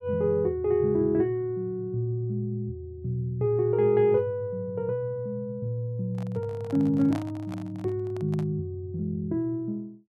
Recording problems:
handling noise; from 6 to 8.5 s; peak -5 dB vs average level

